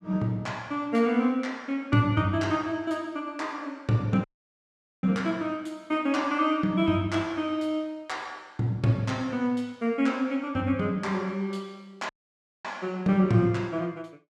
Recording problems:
audio cutting out; at 4 s for 1 s and at 12 s for 0.5 s

